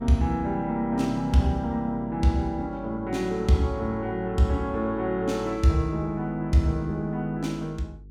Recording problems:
hum; 50 Hz, harmonics up to 450 Hz, SNR 19 dB

